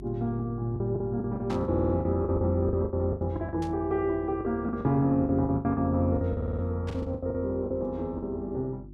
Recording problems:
electrical hum; 50 Hz, harmonics up to 350 Hz, SNR 17 dB
packet loss; 15% of the sound replaced, filled with the last packet
static burst; at 1.5 s, at 3.5 s and at 7 s; peak -12 dB vs average level
audio stuttering; at 1.5 s and at 6.5 s

